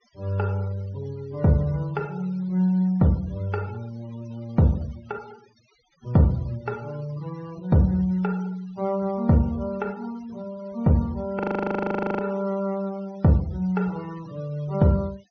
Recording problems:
treble cut off; nothing above 6.3 kHz
denoising artefacts; signal-to-artefact ratio 25 dB
frozen audio; at 11 s for 1 s

